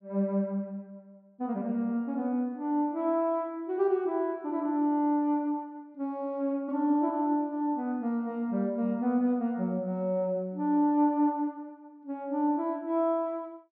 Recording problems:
none

